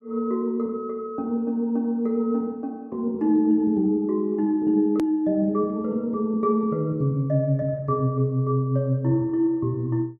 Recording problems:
hard cut with a click; at 5 s

